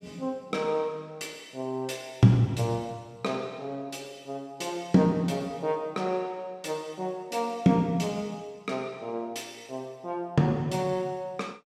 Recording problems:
none

